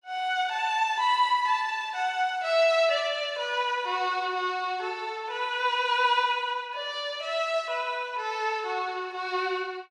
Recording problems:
none

